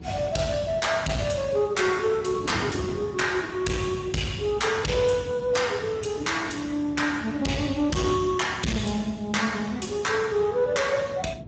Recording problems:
lossy compression; Speex, log-spectral distance 5 dB, nothing above 7.6 kHz
distortion; hard clipping, uneven, signal-to-distortion ratio 11 dB
wind on the microphone; below 330 Hz, SNR 14 dB

